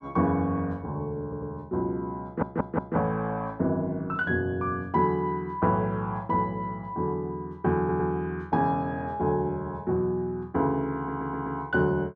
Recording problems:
audio stuttering; 4 times, first at 1 s

